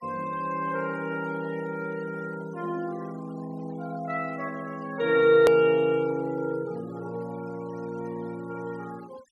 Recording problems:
noise reduction artefacts; signal-to-artefact ratio 24 dB
edit click; at 5.5 s

